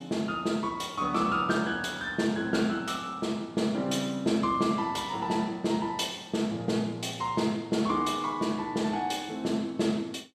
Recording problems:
none

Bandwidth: 14.5 kHz